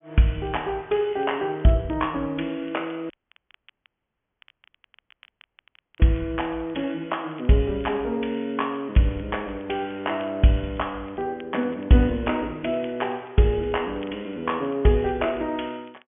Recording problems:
treble cut off; nothing above 3.3 kHz
crackle; vinyl, SNR 29 dB
dropout; at 3 s for 3 s

